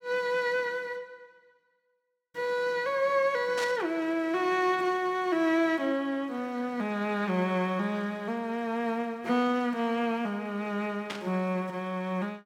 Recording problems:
static burst; at 3.5 s and at 11 s; peak -3 dB vs average level

